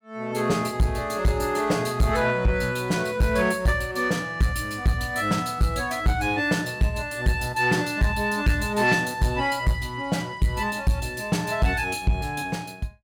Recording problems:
distorted audio; soft clipping, signal-to-distortion ratio 11 dB

